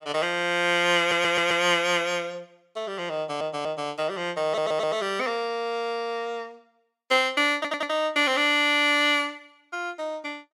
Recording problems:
stutter; 4 times, first at 1 s

